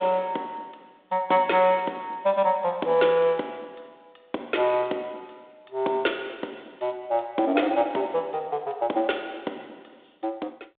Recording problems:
phone line; 260 Hz to 3.7 kHz, G.726

